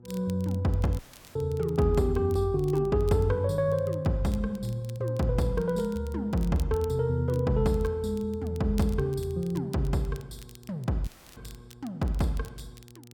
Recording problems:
hum; 60 Hz, harmonics up to 840 Hz, SNR 24 dB
crackle; vinyl, SNR 25 dB
dropout; at 1 s and at 11 s

